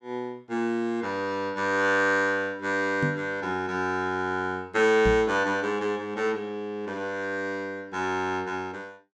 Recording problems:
knock on the microphone; at 3 s and at 5 s; peak +2 dB vs average level

